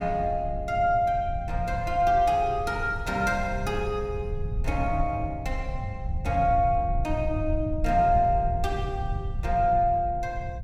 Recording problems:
low-frequency rumble; below 96 Hz, SNR 7 dB

